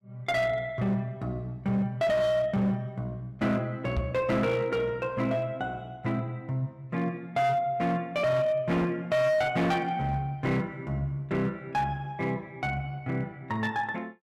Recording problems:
distortion; hard clipping, signal-to-distortion ratio 10 dB
microphone bump; at 4 s; peak +2 dB vs average level

